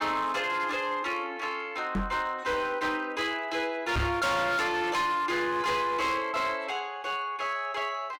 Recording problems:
distorted audio; hard clipping, signal-to-distortion ratio 8 dB
knock on the microphone; at 2 s and at 4 s; peak +4 dB vs average level

